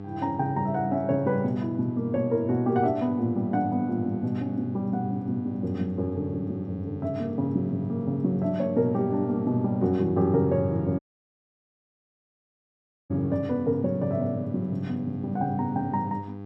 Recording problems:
electrical hum; 50 Hz, harmonics up to 1.2 kHz, SNR 13 dB
dropout; at 11 s for 2 s

